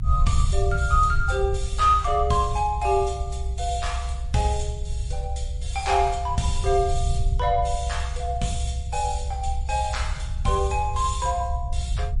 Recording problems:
codec artefacts; MP3, log-spectral distance 2 dB, nothing above 10.4 kHz
low-frequency rumble; below 72 Hz, SNR 3 dB

